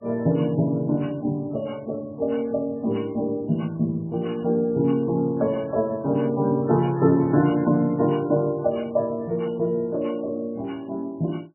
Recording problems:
lossy codec; MP3, log-spectral distance 2 dB, nothing above 2.6 kHz

